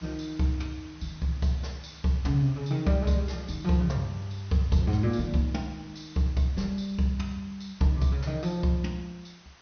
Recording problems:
treble missing; nothing above 6.3 kHz
background hiss; slope -1 dB per octave, SNR 23 dB

